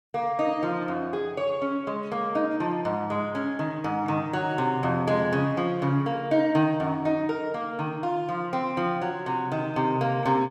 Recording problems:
none

